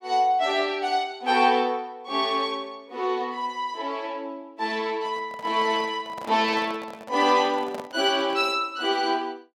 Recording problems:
handling noise; from 5 to 8.5 s; peak -8 dB vs average level

